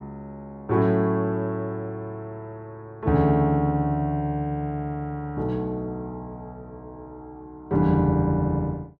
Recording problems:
none

